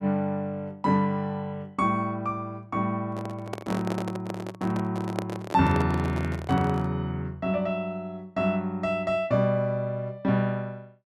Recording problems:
microphone handling noise; from 3 to 7 s; peak +1 dB vs average level

